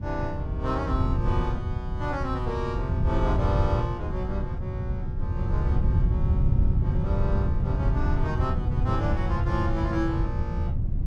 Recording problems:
low-frequency rumble; below 120 Hz, SNR -5 dB

